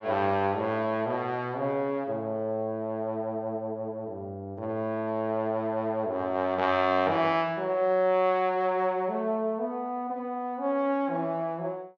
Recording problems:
none

